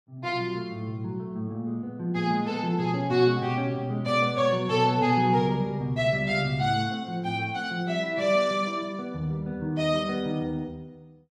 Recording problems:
none

